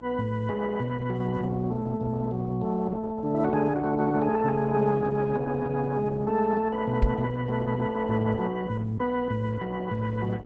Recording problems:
codec artefacts; Opus, log-spectral distance 3 dB
hum; 60 Hz, harmonics up to 900 Hz, SNR 21 dB
microphone bump; at 7 s; peak +6 dB vs average level

